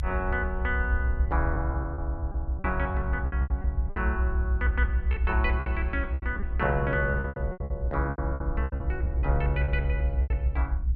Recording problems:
low-frequency rumble; below 68 Hz, SNR -2 dB
packet loss; 12% of the sound replaced, filled with repeated pitch periods

